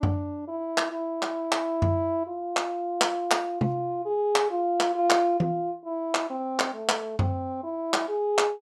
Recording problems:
none

